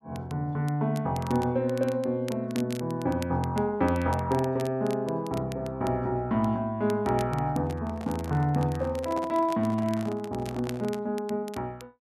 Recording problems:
crackling; vinyl, SNR 20 dB
handling noise; from 7.5 to 11 s; peak -6 dB vs average level

